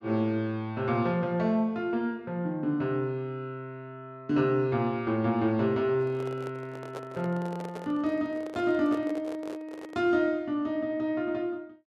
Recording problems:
handling noise; from 6 to 10 s; peak -6 dB vs average level

